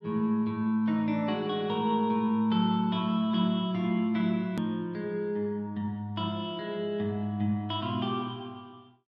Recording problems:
click at an edit; at 4.5 s

